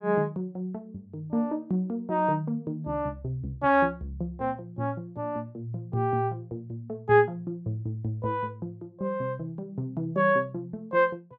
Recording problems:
none

